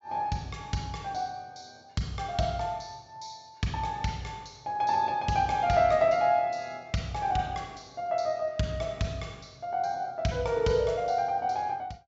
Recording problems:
treble missing; nothing above 8 kHz

